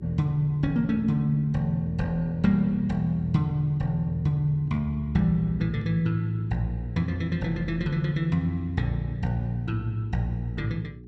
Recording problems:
hum; 60 Hz, harmonics up to 420 Hz, SNR 18 dB

